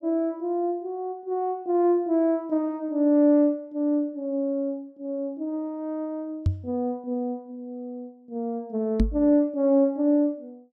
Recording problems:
microphone bump; at 6.5 s and at 9 s; peak +6 dB vs average level

